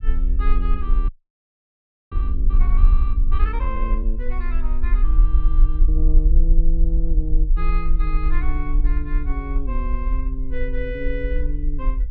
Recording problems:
low-frequency rumble; below 42 Hz, strongest tone 30 Hz, SNR -10 dB
frozen audio; at 1 s for 1 s

